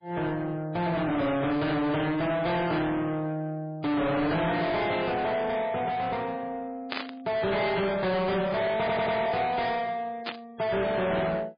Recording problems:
lossy codec; MP3, log-spectral distance 3 dB, nothing above 4.6 kHz
distortion; soft clipping, signal-to-distortion ratio 6 dB
burst of static; at 7 s and at 10 s; peak -1 dB vs average level
audio stuttering; at 9 s

